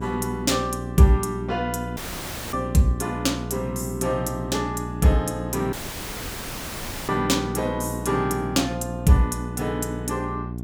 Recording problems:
mains hum; 60 Hz, harmonics up to 780 Hz, SNR 8 dB
audio cutting out; at 2 s for 0.5 s and at 5.5 s for 1.5 s

